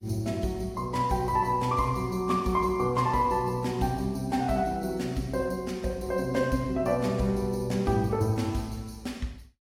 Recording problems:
codec artefacts; AAC, log-spectral distance 2 dB, nothing above 15.1 kHz

